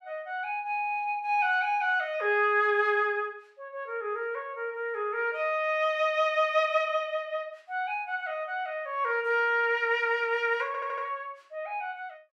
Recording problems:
stutter; at 11 s

